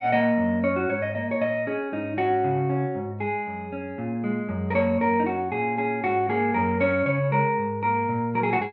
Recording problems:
none

